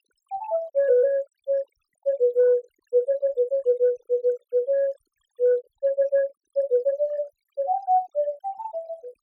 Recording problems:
denoising artefacts; signal-to-artefact ratio 27 dB

